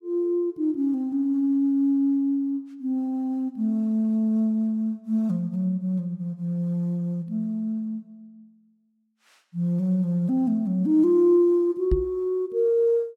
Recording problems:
microphone thump; at 12 s; peak +2 dB vs average level

